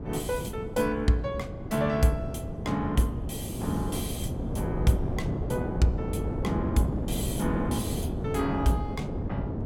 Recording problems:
wind on the microphone; below 310 Hz, SNR 3 dB

